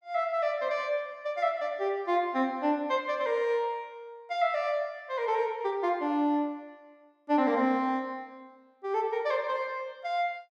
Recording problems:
none

